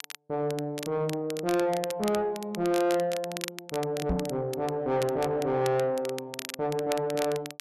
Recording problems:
distorted audio; soft clipping, signal-to-distortion ratio 6 dB
crackle; vinyl, SNR 12 dB
microphone bump; at 4 s; peak +4 dB vs average level

